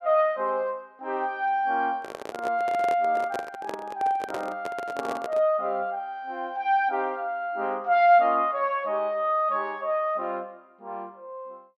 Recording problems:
microphone handling noise; from 2 to 5.5 s; peak -3 dB vs average level

